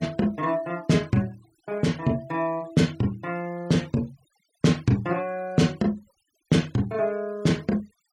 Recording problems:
noise reduction artefacts; signal-to-artefact ratio 26 dB

